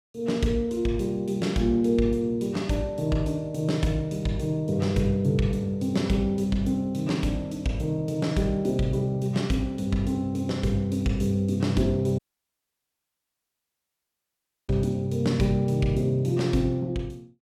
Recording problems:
audio cutting out; at 12 s for 2.5 s

